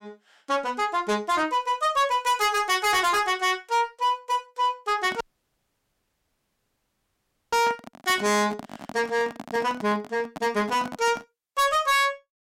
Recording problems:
distortion; soft clipping, signal-to-distortion ratio 6 dB
microphone handling noise; from 5 to 11 s; peak -8 dB vs average level
audio cutting out; at 5 s for 2.5 s

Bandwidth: 16 kHz